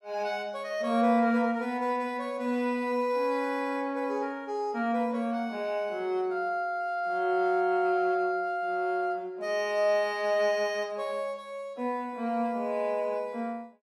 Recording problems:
none

